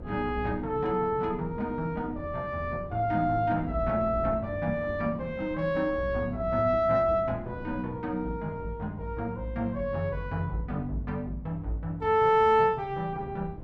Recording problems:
wind noise; below 270 Hz, SNR 15 dB

